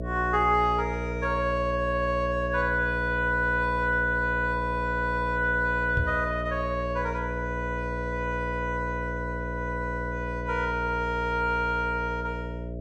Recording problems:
hum; 60 Hz, harmonics up to 660 Hz, SNR 7 dB
microphone bump; at 6 s; peak +2 dB vs average level

